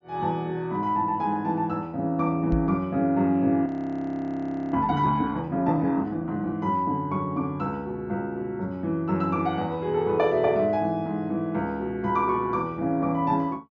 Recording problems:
treble cut off; nothing above 7.2 kHz
microphone thump; at 2.5 s; peak +1 dB vs average level
audio freezing; at 3.5 s for 1 s

